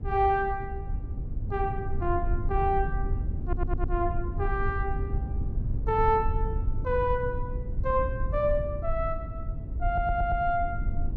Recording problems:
low-frequency rumble; below 86 Hz, SNR 3 dB
audio stuttering; at 3.5 s and at 10 s

